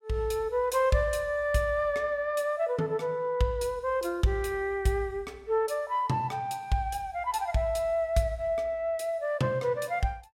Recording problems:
none

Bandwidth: 16 kHz